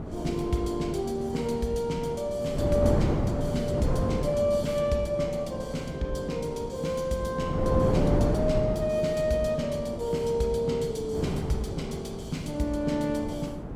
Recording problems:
wind on the microphone; below 350 Hz, SNR 4 dB

